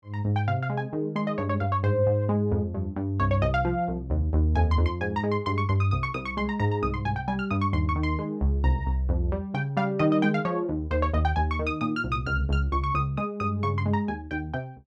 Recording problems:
none

